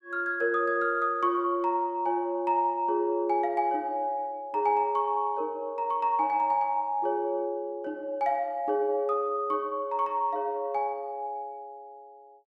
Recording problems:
none

